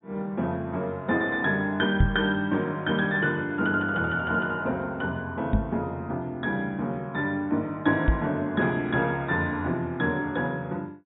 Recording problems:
treble cut off; nothing above 4 kHz
microphone thump; at 2 s, at 5.5 s and at 8 s; peak +9 dB vs average level

